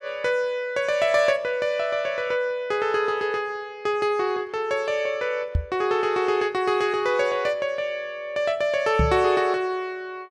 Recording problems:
microphone thump; at 5.5 s and at 9 s; peak +4 dB vs average level

